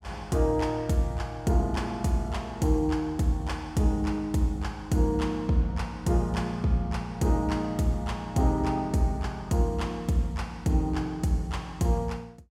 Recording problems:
none

